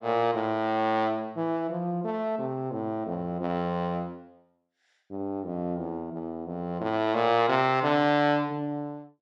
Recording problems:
none

